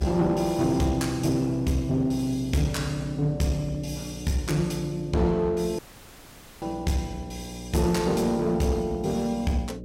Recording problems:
distortion; hard clipping, uneven, signal-to-distortion ratio 11 dB
electrical hum; 60 Hz, harmonics up to 600 Hz, SNR 13 dB
audio cutting out; at 6 s for 1 s

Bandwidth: 16 kHz